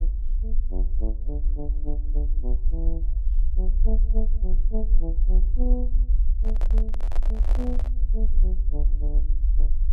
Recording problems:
rumble; below 46 Hz, SNR -13 dB
handling noise; from 6.5 to 8 s; peak +3 dB vs average level

